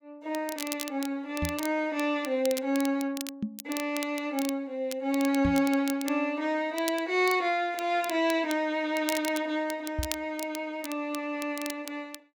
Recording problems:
crackling; vinyl, SNR 12 dB
knock on the microphone; 4 times, first at 1.5 s; peak +2 dB vs average level

